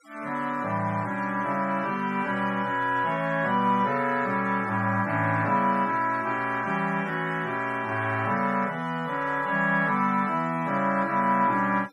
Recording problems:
noise reduction artefacts; signal-to-artefact ratio 22 dB

